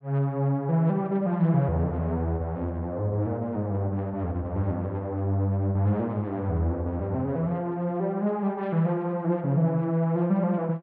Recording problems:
none

